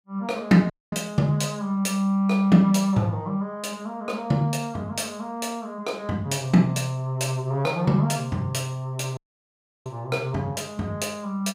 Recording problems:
audio cutting out; at 0.5 s and at 9 s for 0.5 s

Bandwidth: 15.5 kHz